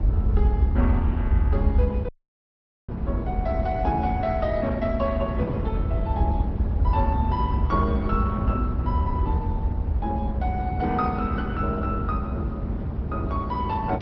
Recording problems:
treble missing; nothing above 5.5 kHz
lossy codec; Opus, log-spectral distance 2 dB
low-frequency rumble; below 82 Hz, SNR -1 dB
wind on the microphone; below 310 Hz, SNR 5 dB
dropout; at 2 s for 1 s

